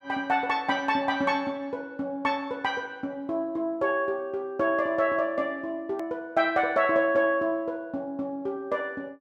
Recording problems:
edit click; at 6 s

